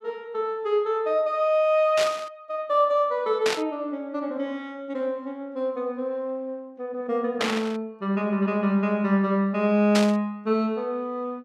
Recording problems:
static burst; 4 times, first at 2 s; peak +3 dB vs average level

